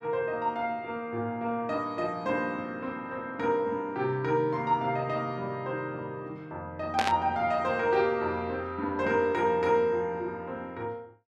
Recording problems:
burst of static; at 7 s; peak +2 dB vs average level

